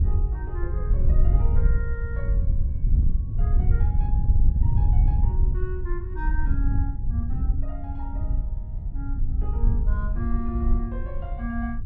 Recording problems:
wind on the microphone; below 74 Hz, SNR -12 dB

